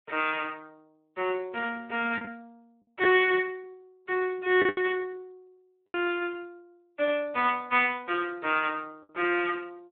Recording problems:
telephone audio; 300 Hz to 3.7 kHz, Speex
packet loss; 4% of the sound replaced, filled with the last packet

